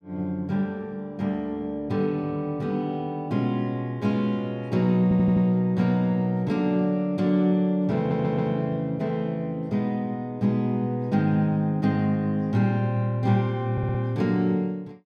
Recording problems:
stutter; at 5 s, at 8 s and at 14 s

